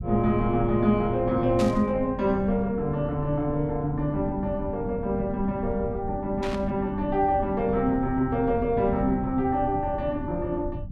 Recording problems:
rumble; below 140 Hz, SNR 11 dB
burst of static; at 1.5 s and at 6.5 s; peak -6 dB vs average level

